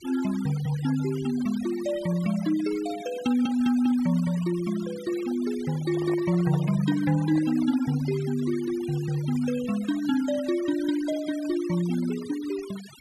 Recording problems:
denoising artefacts; signal-to-artefact ratio 17 dB
handling noise; from 5.5 to 8 s; peak -8 dB vs average level

